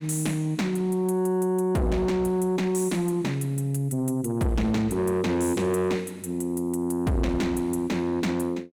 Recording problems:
distorted audio; soft clipping, signal-to-distortion ratio 7 dB

